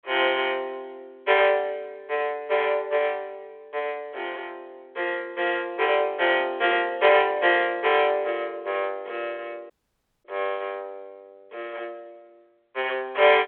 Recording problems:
phone line; 340 Hz to 3.5 kHz, G.726
audio cutting out; at 9.5 s for 0.5 s

